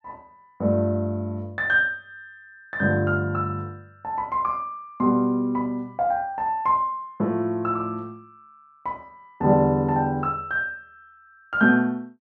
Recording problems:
none

